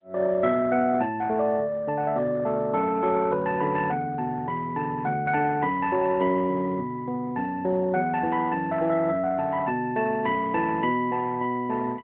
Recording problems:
telephone audio; 280 Hz to 3 kHz, AMR-NB

